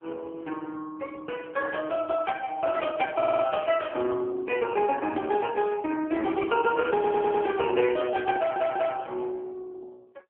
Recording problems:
phone line; 240 Hz to 3.1 kHz, AMR-NB
audio stuttering; at 3 s, at 7 s and at 8.5 s

